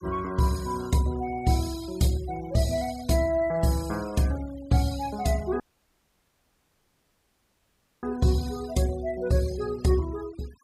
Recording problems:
noise reduction artefacts; signal-to-artefact ratio 19 dB
dropout; at 5.5 s for 2.5 s

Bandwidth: 15.5 kHz